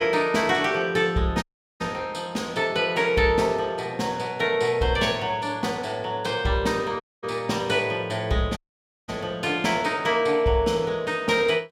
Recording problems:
dropout; at 1.5 s, at 7 s and at 8.5 s for 0.5 s

